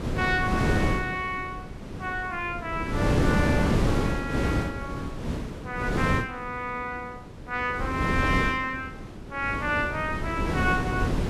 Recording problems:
wind on the microphone; below 420 Hz, SNR -1 dB

